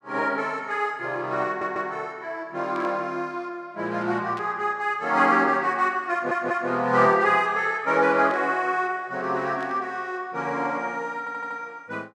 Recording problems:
audio stuttering; at 1.5 s, at 6 s and at 11 s
static burst; 4 times, first at 3 s; peak -14 dB vs average level

